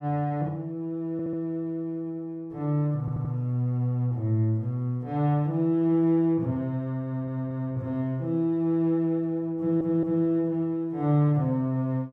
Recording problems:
audio stuttering; 4 times, first at 1 s

